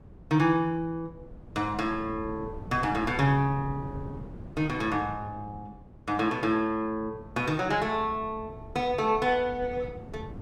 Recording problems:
wind on the microphone; below 240 Hz, SNR 16 dB

